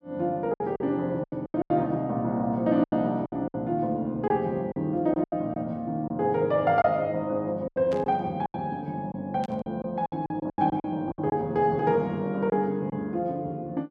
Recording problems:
packet loss; 10% of the sound replaced, filled with silence
burst of static; at 8 s and at 9.5 s; peak -12 dB vs average level

